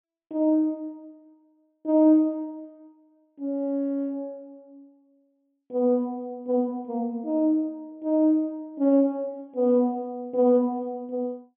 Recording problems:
treble missing; nothing above 3.4 kHz

